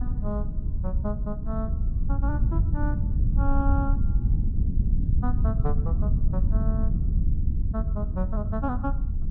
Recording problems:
wind noise; below 88 Hz, SNR -8 dB

